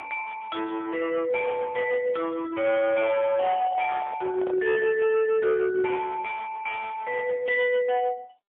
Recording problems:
telephone audio; 900 Hz to 2 kHz, AMR-NB, then MP3
distorted audio; hard clipping, signal-to-distortion ratio 11 dB
microphone handling noise; from 3.5 to 5 s; peak -6 dB vs average level

